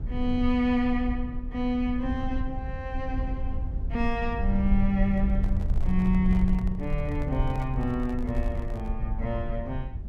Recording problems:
low-frequency rumble; below 68 Hz, SNR 3 dB
microphone handling noise; from 5 to 9 s; peak -12 dB vs average level

